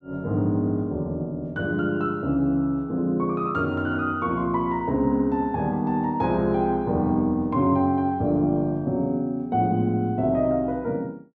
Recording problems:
none

